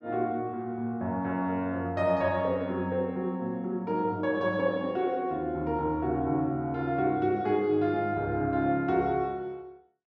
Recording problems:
none

